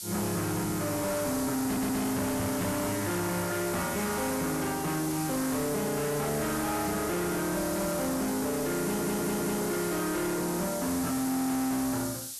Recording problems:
distortion; soft clipping, signal-to-distortion ratio 7 dB
background hiss; SNR 7 dB
audio stuttering; at 1.5 s and at 9 s

